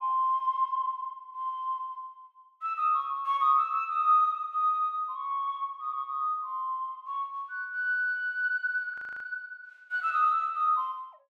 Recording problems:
audio freezing; at 9 s

